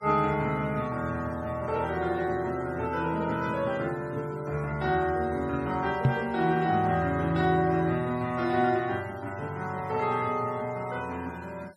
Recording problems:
denoising artefacts; signal-to-artefact ratio 24 dB
knock on the microphone; at 6 s; peak +8 dB vs average level

